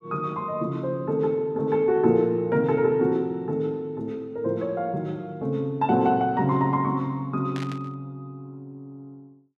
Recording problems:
static burst; at 7.5 s; peak -9 dB vs average level

